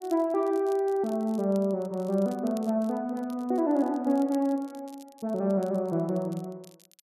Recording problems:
crackle; vinyl, SNR 27 dB

